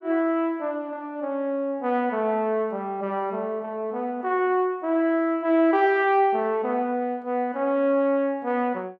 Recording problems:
none

